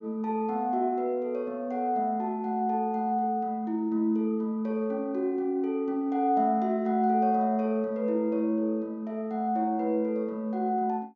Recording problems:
low-pass filter; nothing above 7.1 kHz

